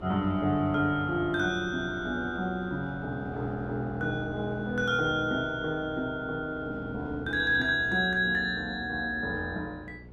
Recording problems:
hum; 60 Hz, harmonics up to 420 Hz, SNR 20 dB
wind on the microphone; below 620 Hz, SNR 20 dB

